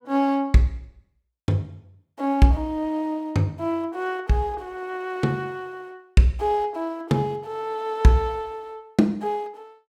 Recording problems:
none

